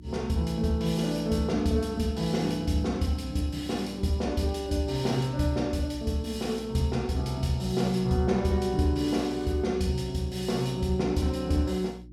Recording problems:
hum; 60 Hz, harmonics up to 360 Hz, SNR 19 dB

